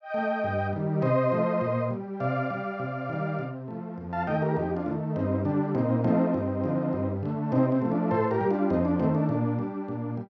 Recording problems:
none

